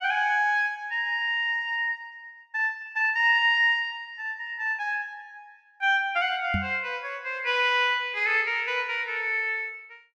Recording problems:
microphone thump; at 6.5 s; peak 0 dB vs average level

